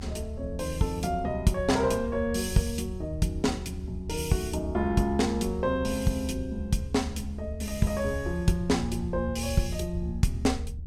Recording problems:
low-frequency rumble; below 76 Hz, strongest tone 74 Hz, SNR 8 dB

